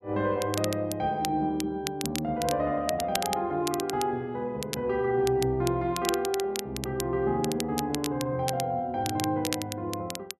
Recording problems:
crackling; vinyl, SNR 8 dB

